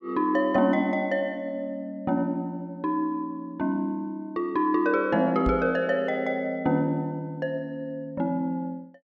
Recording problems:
knock on the microphone; at 5.5 s; peak 0 dB vs average level

